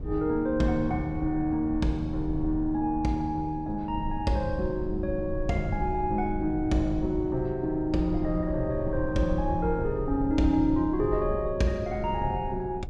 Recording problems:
rumble; below 110 Hz, SNR 9 dB

